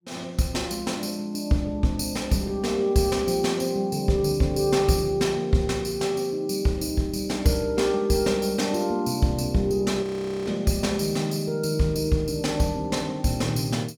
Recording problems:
frozen audio; at 10 s

